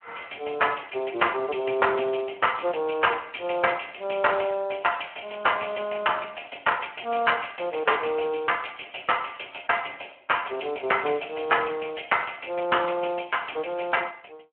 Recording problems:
telephone audio; 280 Hz to 3.1 kHz, Speex

